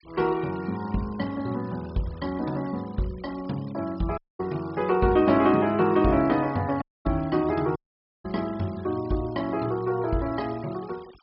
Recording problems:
treble cut off; nothing above 5.4 kHz
noise reduction artefacts; signal-to-artefact ratio 24 dB
audio cutting out; at 4 s, at 7 s and at 8 s

